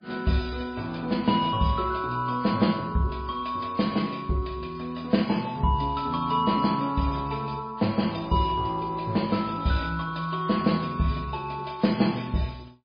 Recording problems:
lossy compression; MP3, log-spectral distance 4 dB

